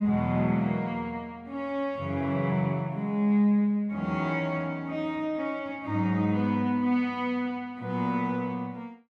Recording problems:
none

